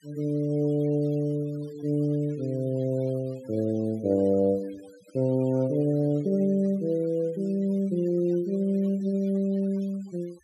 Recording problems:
denoising artefacts; signal-to-artefact ratio 28 dB

